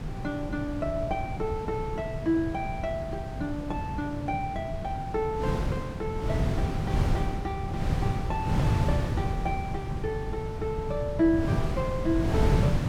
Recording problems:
low-frequency rumble; below 130 Hz, SNR 10 dB
wind noise; below 210 Hz, SNR 0 dB

